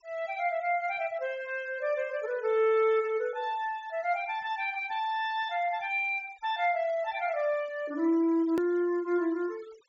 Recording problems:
treble cut off; nothing above 7.3 kHz
noise reduction artefacts; signal-to-artefact ratio 24 dB
click at an edit; at 8.5 s

